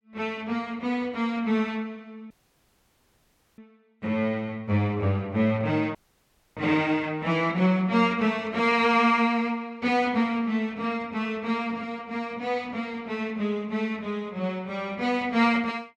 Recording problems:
dropout; at 2.5 s for 1.5 s and at 6 s for 0.5 s

